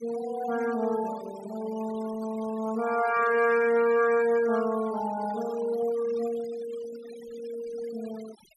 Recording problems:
noise reduction artefacts; signal-to-artefact ratio 18 dB

